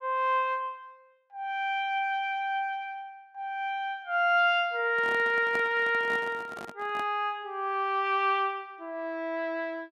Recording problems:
microphone handling noise; from 5 to 7 s; peak -7 dB vs average level

